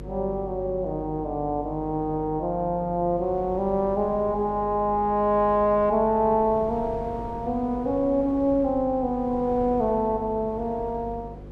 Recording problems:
hum; 50 Hz, harmonics up to 550 Hz, SNR 16 dB
wind on the microphone; below 480 Hz, SNR 19 dB

